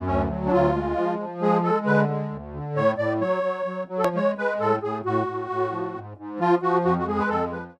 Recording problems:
click at an edit; at 4 s

